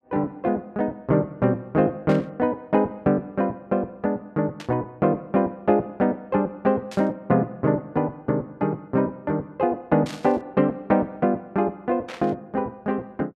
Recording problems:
static burst; 5 times, first at 2 s; peak -9 dB vs average level

